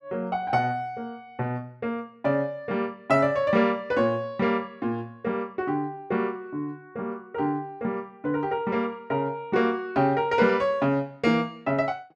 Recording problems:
none

